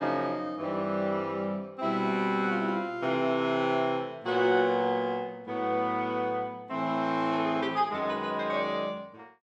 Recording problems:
none

